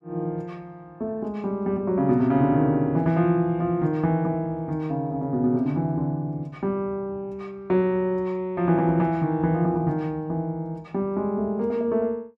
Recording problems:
none

